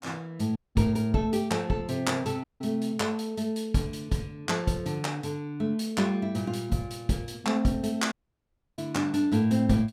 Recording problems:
audio cutting out; at 0.5 s, at 2.5 s and at 8 s for 0.5 s

